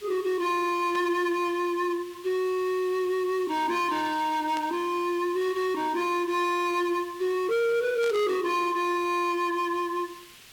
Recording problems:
distortion; hard clipping, signal-to-distortion ratio 6 dB
background hiss; SNR 21 dB
burst of static; at 1 s, at 4.5 s and at 8 s; peak -9 dB vs average level

